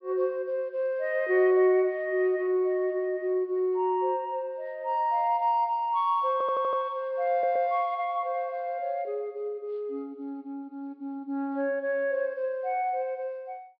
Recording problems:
treble cut off; nothing above 5.5 kHz
stutter; at 6.5 s and at 7.5 s

